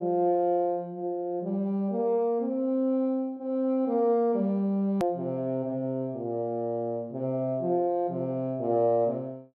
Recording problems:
hard cut with a click; at 5 s

